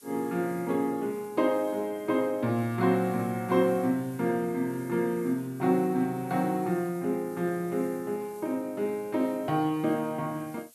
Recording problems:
background hiss; slope +2 dB per octave, SNR 24 dB

